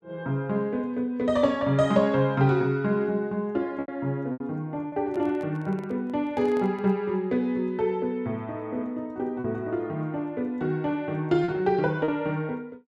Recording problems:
packet loss; 3% of the sound replaced, filled with repeated pitch periods
microphone handling noise; from 5 to 7 s; peak -11 dB vs average level

